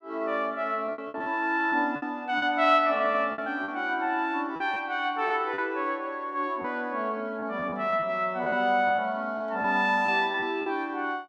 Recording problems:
lost packets; 8% of the sound replaced, filled with repeated pitch periods

